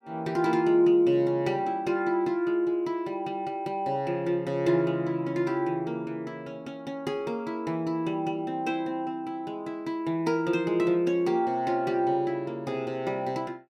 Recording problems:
none

